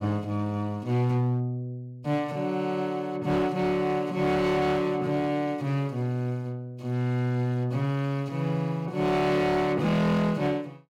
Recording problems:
distortion; hard clipping, signal-to-distortion ratio 12 dB

